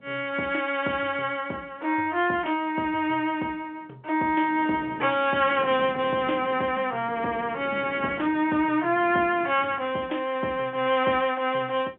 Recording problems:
telephone audio; 240 Hz to 3.3 kHz, G.711
wind noise; below 490 Hz, SNR 18 dB

